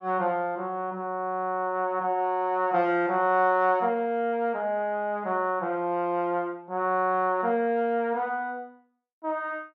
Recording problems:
none

